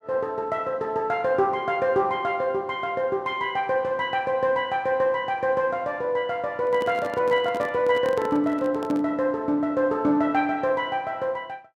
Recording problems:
handling noise; from 6.5 to 9 s; peak -6 dB vs average level

